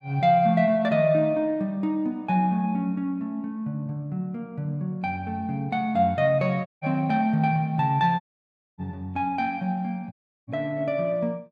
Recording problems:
audio cutting out; at 6.5 s, at 8 s for 0.5 s and at 10 s

